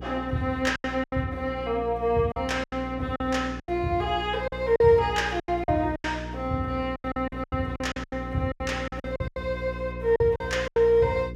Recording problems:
electrical hum; 60 Hz, harmonics up to 480 Hz, SNR 12 dB
lost packets; 13% of the sound replaced, filled with silence

